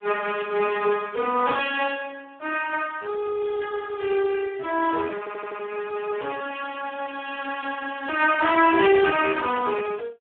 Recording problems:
phone line; 300 Hz to 3.3 kHz, Speex
stutter; at 5 s

